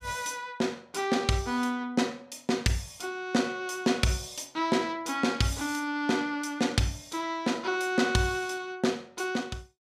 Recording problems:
none

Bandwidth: 15 kHz